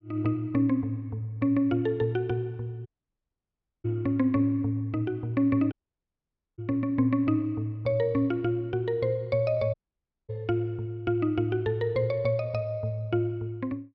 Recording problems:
audio cutting out; at 3 s for 1 s, at 5.5 s for 1 s and at 9.5 s for 0.5 s

